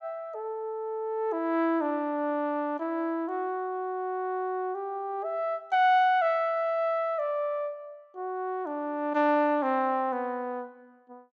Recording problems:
none

